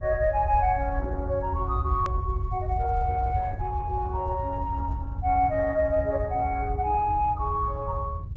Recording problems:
low-pass filter; nothing above 8 kHz
lossy compression; Opus, log-spectral distance 2 dB
low-frequency rumble; below 92 Hz, SNR 5 dB
edit click; at 2 s

